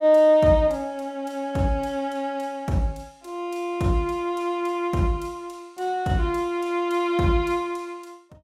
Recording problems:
none

